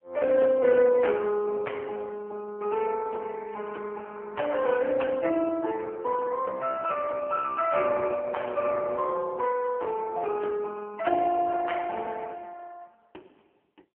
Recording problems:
telephone audio; 280 Hz to 2.6 kHz, AMR-NB

